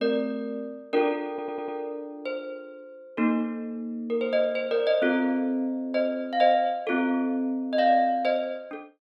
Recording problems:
audio stuttering; at 1.5 s

